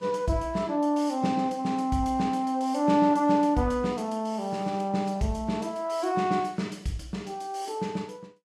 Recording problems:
lossy codec; Vorbis, log-spectral distance 2 dB, nothing above 11.6 kHz

